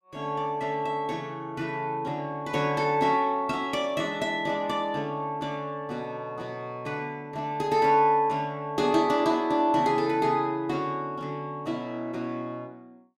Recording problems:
none

